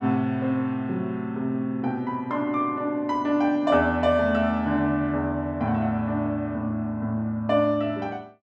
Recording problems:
none

